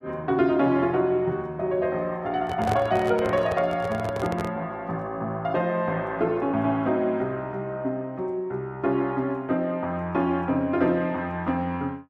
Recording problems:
handling noise; from 2.5 to 4.5 s; peak 0 dB vs average level

